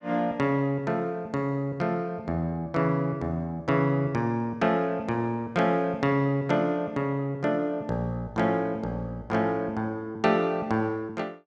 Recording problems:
none

